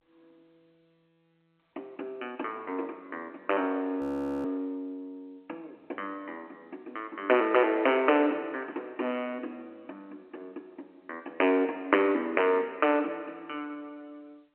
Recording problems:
phone line; 260 Hz to 3.2 kHz, G.711
audio freezing; at 4 s

